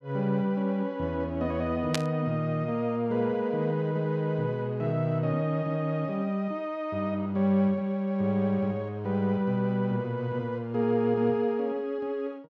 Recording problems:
burst of static; at 2 s; peak +3 dB vs average level

